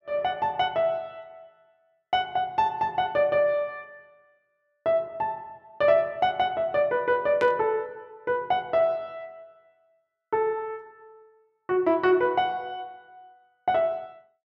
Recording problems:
static burst; at 7.5 s; peak -7 dB vs average level

